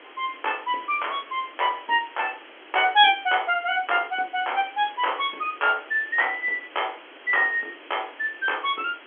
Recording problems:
phone line; 260 Hz to 3.4 kHz, G.711
background hiss; SNR 21 dB

